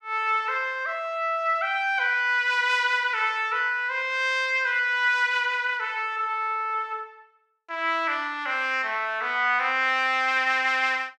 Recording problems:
none

